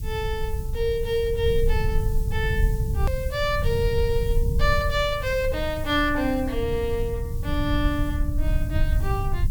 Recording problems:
background hiss; SNR 19 dB
low-frequency rumble; below 92 Hz, SNR 1 dB
hard cut with a click; at 3 s

